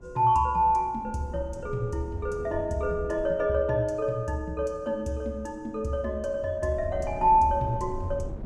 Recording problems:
wind noise; below 180 Hz, SNR 16 dB

